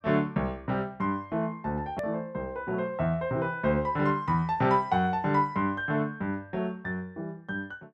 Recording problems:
click at an edit; at 2 s

